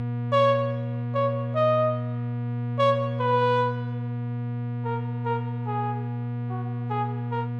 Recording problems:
hum; 60 Hz, harmonics up to 1.2 kHz, SNR 4 dB

